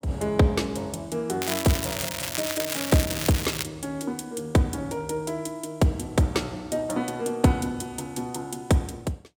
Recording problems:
crackle; from 1.5 to 3.5 s; loose cable, SNR 3 dB

